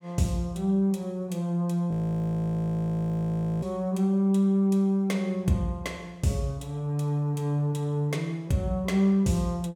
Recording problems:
frozen audio; at 2 s for 1.5 s

